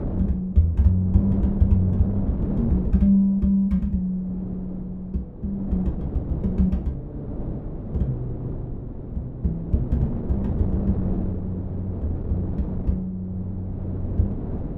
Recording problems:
wind on the microphone; below 270 Hz, SNR 7 dB

